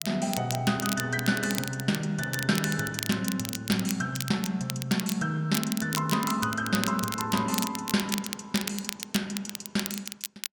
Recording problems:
crackling; vinyl, SNR 6 dB

